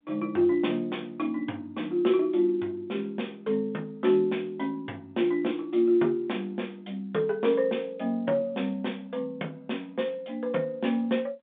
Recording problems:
phone line; 220 Hz to 3.6 kHz, G.711

